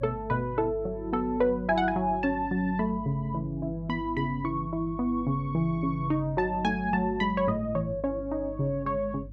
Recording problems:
hum; 50 Hz, harmonics up to 300 Hz, SNR 15 dB

